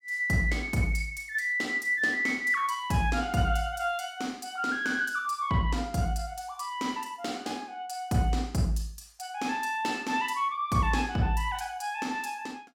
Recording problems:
none

